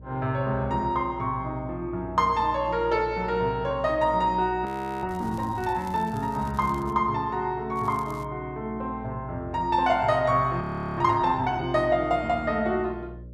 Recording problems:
electrical hum; 60 Hz, harmonics up to 600 Hz, SNR 17 dB
audio freezing; at 4.5 s and at 11 s
crackling; from 5 to 7 s and at 8 s; loose cable, SNR 26 dB

